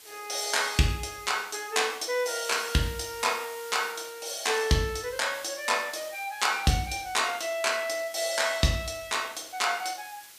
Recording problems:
hiss; slope +2 dB per octave, SNR 18 dB

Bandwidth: 15 kHz